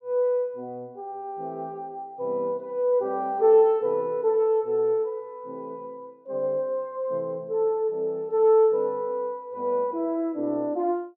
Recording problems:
none

